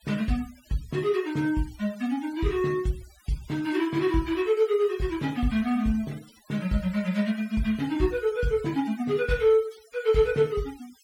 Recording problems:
denoising artefacts; signal-to-artefact ratio 22 dB

